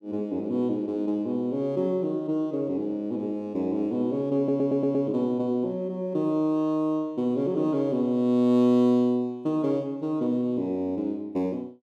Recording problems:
audio stuttering; at 4.5 s

